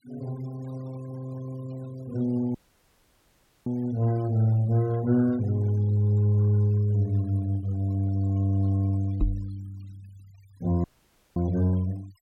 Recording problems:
noise reduction artefacts; signal-to-artefact ratio 26 dB
dropout; at 2.5 s for 1 s and at 11 s for 0.5 s
microphone bump; at 9 s; peak +4 dB vs average level

